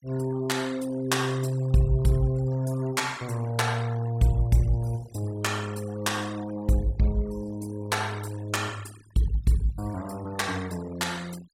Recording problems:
noise reduction artefacts; signal-to-artefact ratio 20 dB

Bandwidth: 16 kHz